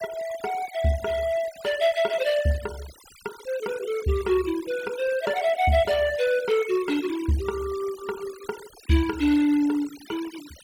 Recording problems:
noise reduction artefacts; signal-to-artefact ratio 17 dB

